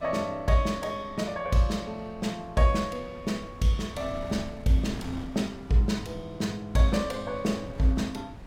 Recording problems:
wind noise; below 300 Hz, SNR 16 dB

